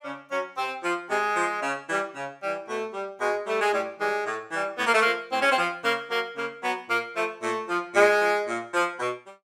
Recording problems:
none

